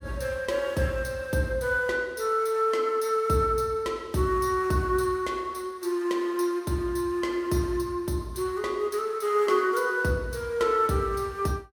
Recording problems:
none

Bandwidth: 17 kHz